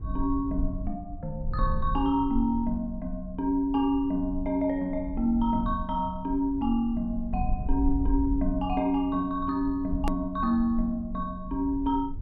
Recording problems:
low-frequency rumble; below 64 Hz, SNR 8 dB
edit click; at 10 s

